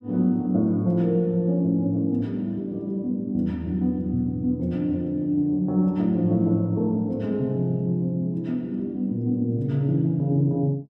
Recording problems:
none

